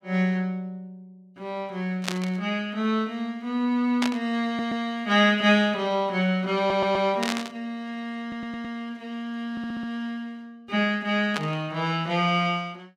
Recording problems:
static burst; 4 times, first at 2 s; peak +2 dB vs average level
audio stuttering; 4 times, first at 4.5 s

